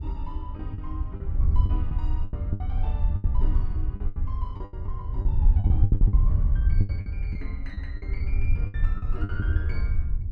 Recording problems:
wind noise; below 78 Hz, SNR -15 dB
packet loss; 13% of the sound replaced, filled with the last packet

